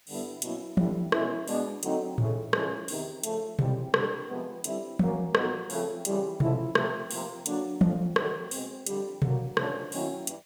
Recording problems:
hiss; slope +1 dB per octave, SNR 30 dB

